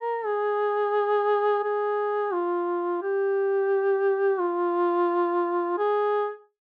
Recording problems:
none

